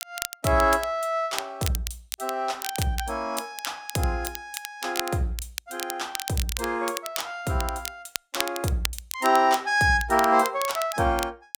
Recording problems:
crackling; vinyl, SNR 9 dB

